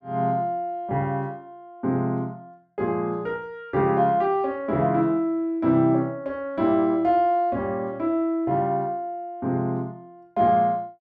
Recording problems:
none

